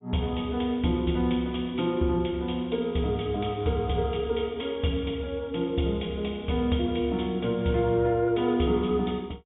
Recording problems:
treble missing; nothing above 4 kHz

